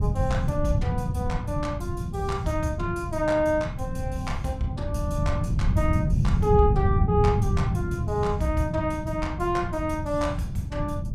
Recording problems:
wind noise; below 150 Hz, SNR 0 dB

